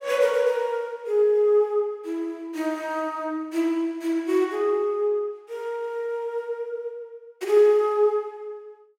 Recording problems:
none

